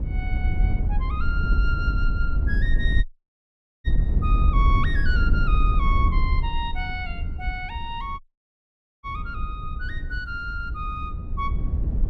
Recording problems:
wind noise; below 72 Hz, SNR -6 dB
audio cutting out; at 3 s for 1 s and at 8 s for 1 s

